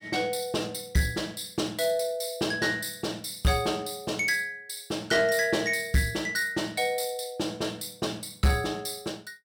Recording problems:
distortion; soft clipping, signal-to-distortion ratio 11 dB

